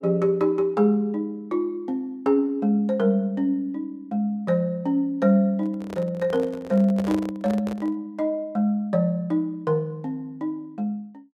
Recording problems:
microphone handling noise; from 5.5 to 8 s; peak -3 dB vs average level

